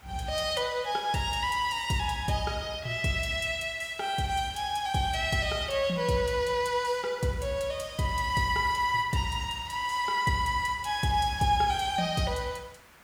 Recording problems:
hiss; SNR 25 dB

